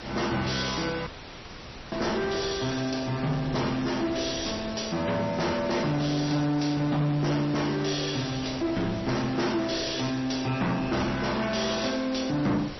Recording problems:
codec artefacts; MP3, log-spectral distance 11 dB, nothing above 5.8 kHz
distortion; soft clipping, signal-to-distortion ratio 11 dB
background hiss; SNR 14 dB
wind on the microphone; below 530 Hz, SNR 17 dB
dropout; at 1 s for 1 s

